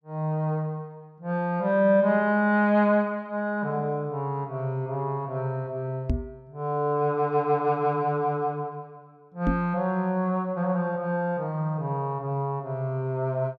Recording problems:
microphone bump; at 6 s and at 9.5 s; peak +4 dB vs average level

